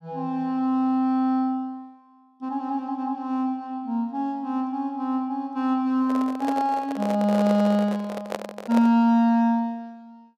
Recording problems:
handling noise; from 6 to 9 s; peak -2 dB vs average level

